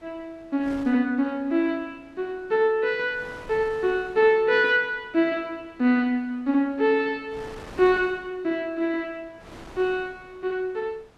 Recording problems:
wind on the microphone; below 1.3 kHz, SNR 24 dB

